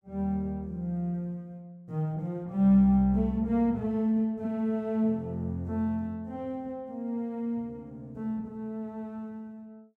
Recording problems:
none

